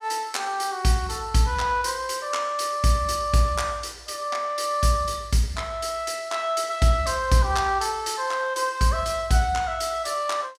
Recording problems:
none

